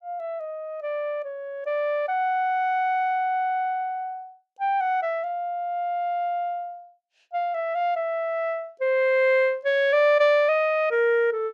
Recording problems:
none

